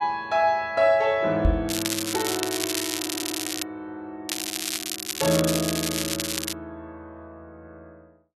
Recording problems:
knock on the microphone; at 1.5 s; peak +7 dB vs average level
crackle; from 1.5 to 3.5 s and from 4.5 to 6.5 s; loose cable, SNR 2 dB
stutter; at 3 s

